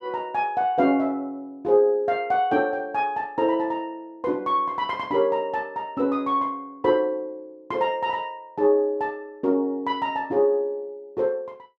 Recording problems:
none

